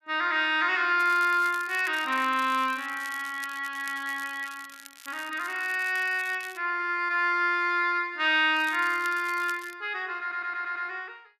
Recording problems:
crackle; from 1 to 6.5 s and from 8.5 to 10 s; loose cable, SNR 20 dB
audio stuttering; at 10 s

